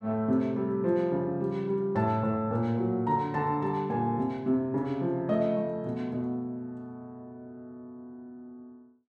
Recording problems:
none

